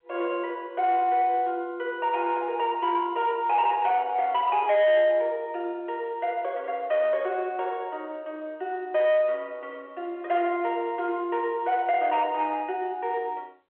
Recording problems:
telephone audio; 300 Hz to 3.3 kHz, G.711
distortion; soft clipping, signal-to-distortion ratio 11 dB

